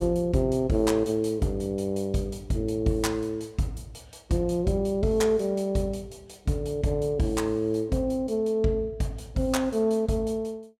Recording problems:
none

